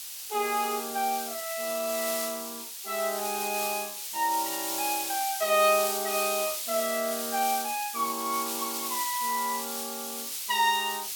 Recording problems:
hiss; slope +5 dB per octave, SNR 3 dB

